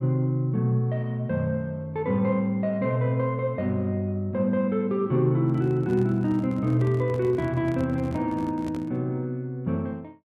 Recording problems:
microphone handling noise; from 5.5 to 9 s; peak -7 dB vs average level

